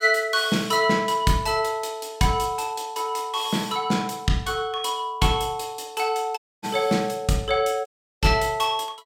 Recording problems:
dropout; at 6.5 s and at 8 s

